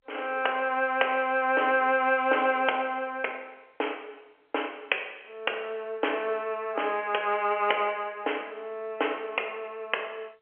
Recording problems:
telephone audio; 340 Hz to 3.2 kHz, G.711

